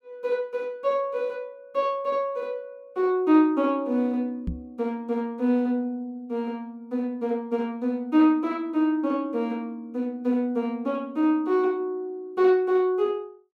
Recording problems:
knock on the microphone; at 4.5 s; peak -1 dB vs average level

